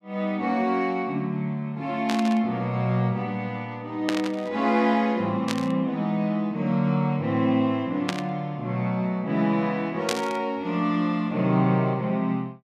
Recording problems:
burst of static; 5 times, first at 2 s; peak +1 dB vs average level

